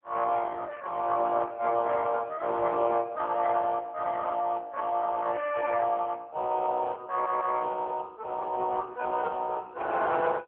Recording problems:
phone line; 390 Hz to 3.7 kHz, AMR-NB
stutter; at 7 s

